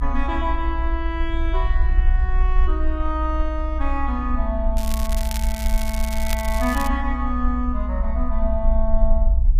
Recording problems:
low-frequency rumble; below 58 Hz, SNR -3 dB
crackle; from 5 to 7 s; loose cable, SNR 6 dB

